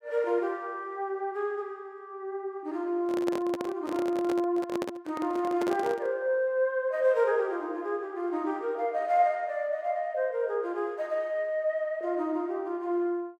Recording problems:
microphone handling noise; from 3 to 6 s; peak -1 dB vs average level

